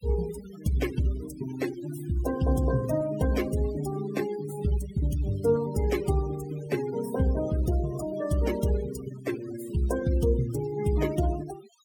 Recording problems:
noise reduction artefacts; signal-to-artefact ratio 14 dB

